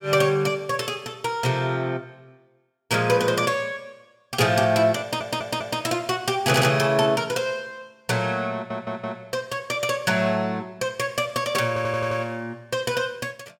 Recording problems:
stutter; 4 times, first at 5 s

